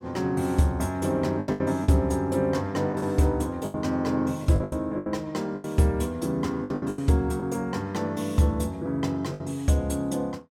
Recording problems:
lost packets; 9% of the sound replaced, filled with the last packet

